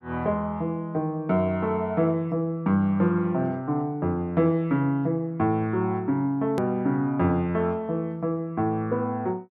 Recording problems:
hard cut with a click; at 6.5 s

